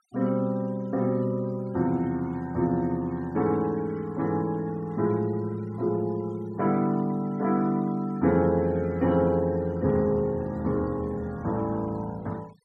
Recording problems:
denoising artefacts; signal-to-artefact ratio 26 dB

